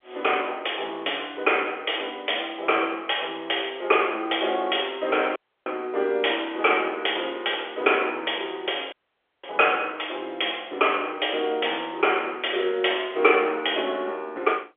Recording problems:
telephone audio; 300 Hz to 3.4 kHz, G.711
audio cutting out; at 5.5 s and at 9 s for 0.5 s

